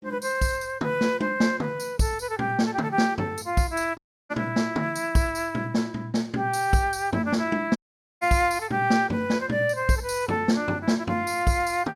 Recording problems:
dropout; at 4 s and at 8 s

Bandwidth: 16 kHz